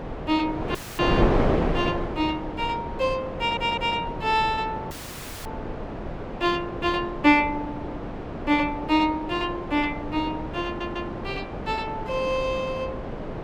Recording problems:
wind noise; below 640 Hz, SNR 5 dB
audio cutting out; at 1 s and at 5 s for 0.5 s
stutter; at 3.5 s and at 11 s

